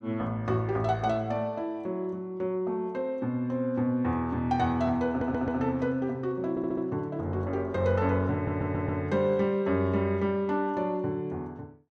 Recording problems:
stutter; at 5 s, at 6.5 s and at 8.5 s

